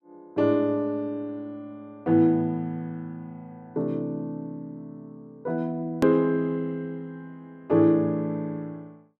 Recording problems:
click at an edit; at 6 s

